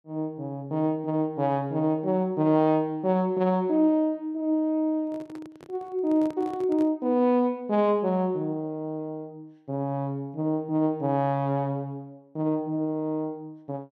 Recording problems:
microphone handling noise; from 5 to 7 s; peak -10 dB vs average level

